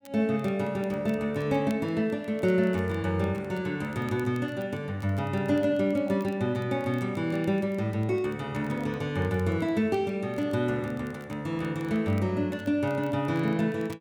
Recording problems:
crackling; vinyl, SNR 29 dB

